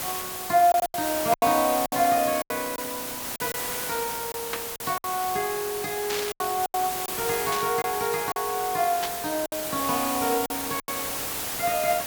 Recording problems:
background hiss; slope -2 dB per octave, SNR 3 dB
packet loss; 8% of the sound replaced, filled with silence
static burst; 4 times, first at 4.5 s; peak 0 dB vs average level

